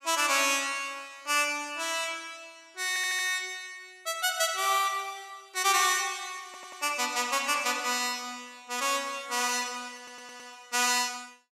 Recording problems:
stutter; at 3 s, at 6.5 s and at 10 s

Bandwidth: 15 kHz